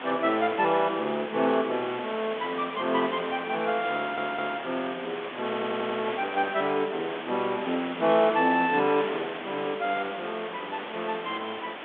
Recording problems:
telephone audio; 190 Hz to 3.5 kHz, G.726
background hiss; SNR 9 dB
audio stuttering; at 4 s and at 5.5 s

